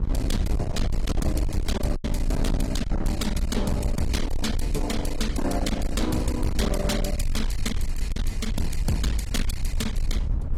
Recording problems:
codec artefacts; AAC, log-spectral distance 2 dB, nothing above 14.7 kHz
distorted audio; hard clipping, signal-to-distortion ratio 7 dB
low-frequency rumble; below 74 Hz, SNR 1 dB
wind noise; below 300 Hz, SNR 20 dB
lost packets; 1.2% of the sound replaced, filled with silence

